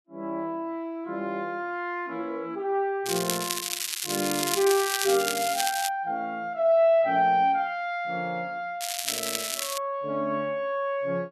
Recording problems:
crackle; from 3 to 6 s and at 9 s; loose cable, SNR 2 dB

